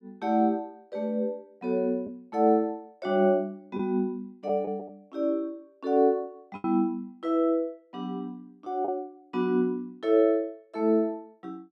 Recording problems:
lost packets; 2% of the sound replaced, filled with the last packet

